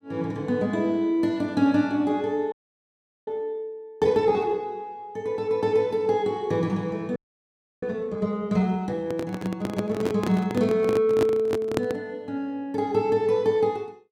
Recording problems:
audio freezing; at 2.5 s for 1 s and at 7 s for 0.5 s
handling noise; from 9 to 12 s; peak +4 dB vs average level

